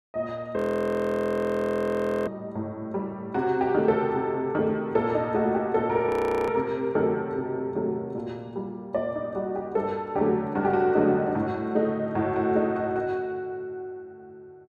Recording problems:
frozen audio; at 0.5 s for 1.5 s and at 6 s

